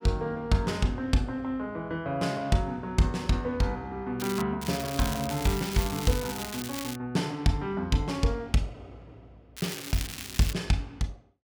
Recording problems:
crackling; at 4 s, from 4.5 to 7 s and at 9.5 s; loose cable, SNR 8 dB

